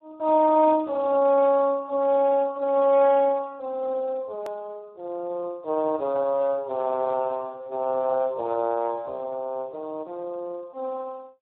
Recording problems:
phone line; 320 Hz to 2.8 kHz, Speex
click at an edit; at 4.5 s

